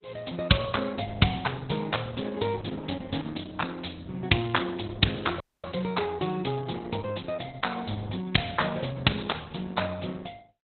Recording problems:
lossy compression; Opus, log-spectral distance 9 dB, nothing above 4 kHz
audio cutting out; at 5.5 s

